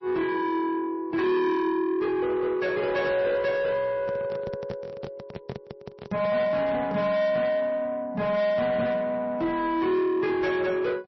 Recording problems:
codec artefacts; MP3, then MP3, log-spectral distance 2 dB, nothing above 5 kHz
distortion; soft clipping, signal-to-distortion ratio 10 dB
microphone handling noise; from 4 to 7 s; peak -5 dB vs average level

